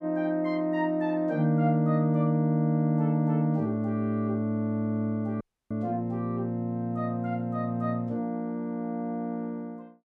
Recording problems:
audio cutting out; at 5.5 s

